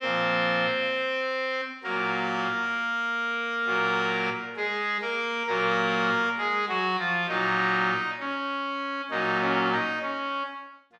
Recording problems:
none

